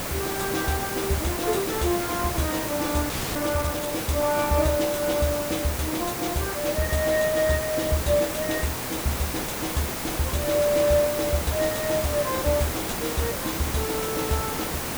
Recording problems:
distortion; soft clipping, signal-to-distortion ratio 4 dB
background hiss; SNR 4 dB
frozen audio; at 3 s

